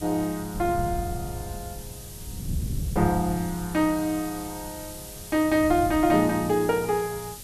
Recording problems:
background hiss; SNR 15 dB
wind on the microphone; below 150 Hz, SNR 12 dB

